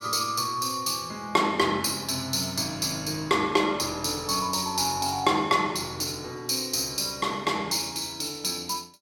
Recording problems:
none

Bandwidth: 17 kHz